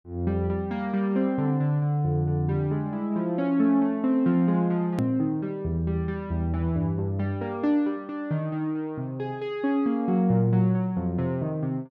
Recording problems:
hard cut with a click; at 5 s

